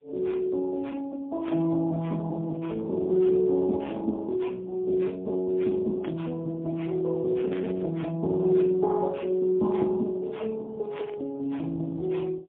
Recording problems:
phone line; 190 Hz to 2 kHz, AMR-NB, then MP3
static burst; 4 times, first at 1.5 s; peak -10 dB vs average level

